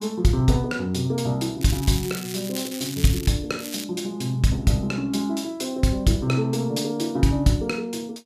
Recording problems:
crackling; from 1.5 to 3.5 s and at 3.5 s; loose cable, SNR 11 dB

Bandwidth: 14.5 kHz